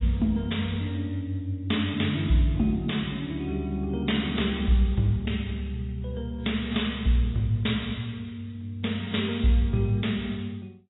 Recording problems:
codec artefacts; AAC, log-spectral distance 3 dB, nothing above 3.8 kHz

